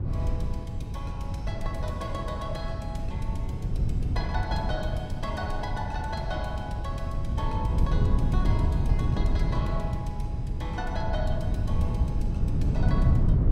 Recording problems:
wind on the microphone; below 130 Hz, SNR -7 dB

